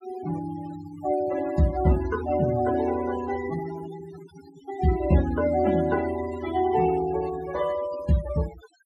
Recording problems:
noise reduction artefacts; signal-to-artefact ratio 14 dB

